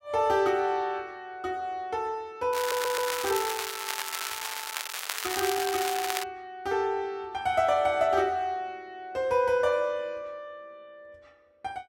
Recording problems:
crackle; from 2.5 to 6 s; loose cable, SNR 4 dB
stutter; at 2.5 s

